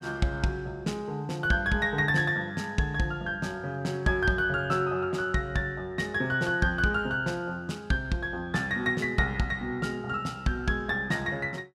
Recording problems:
none

